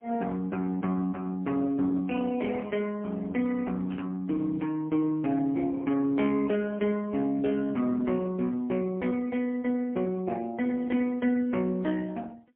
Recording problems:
phone line; 190 Hz to 3.2 kHz, AMR-NB, then MP3
burst of static; at 4 s and at 11 s; peak -13 dB vs average level

